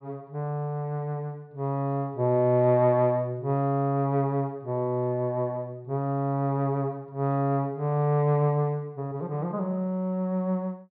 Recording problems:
low-pass filter; nothing above 4.8 kHz

